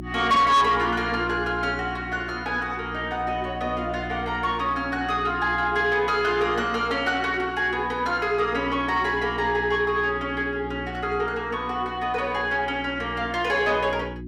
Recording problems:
distortion; soft clipping, signal-to-distortion ratio 12 dB
hum; 60 Hz, harmonics up to 360 Hz, SNR 14 dB

